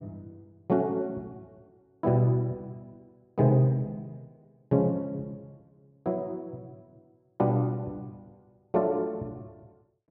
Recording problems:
none

